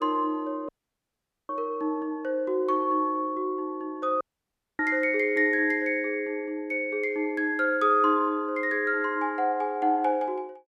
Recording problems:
audio cutting out; at 0.5 s for 1 s and at 4 s for 0.5 s

